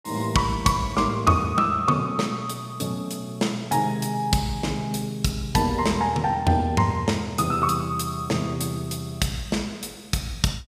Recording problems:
none

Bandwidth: 15 kHz